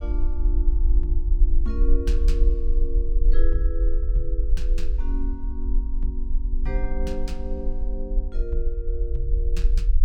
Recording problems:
low-frequency rumble; below 46 Hz, SNR -10 dB

